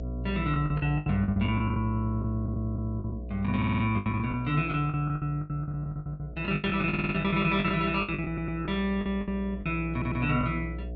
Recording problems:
low-pass filter; nothing above 7.4 kHz
hum; 60 Hz, harmonics up to 720 Hz, SNR 10 dB
packet loss; 17% of the sound replaced, filled with the last packet
audio stuttering; 4 times, first at 3.5 s

